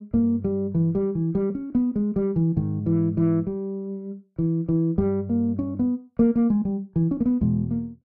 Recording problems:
none

